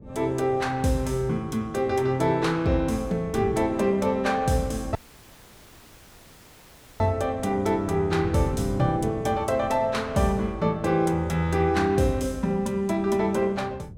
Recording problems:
wind noise; below 220 Hz, SNR 15 dB
audio cutting out; at 5 s for 2 s

